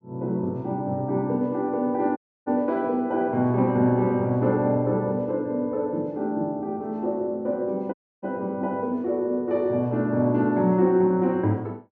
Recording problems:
dropout; at 2 s and at 8 s

